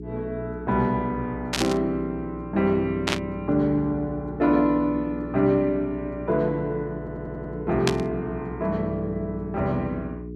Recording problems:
electrical hum; 60 Hz, harmonics up to 420 Hz, SNR 11 dB
burst of static; at 1.5 s, at 3 s and at 8 s; peak +5 dB vs average level
audio stuttering; at 7 s

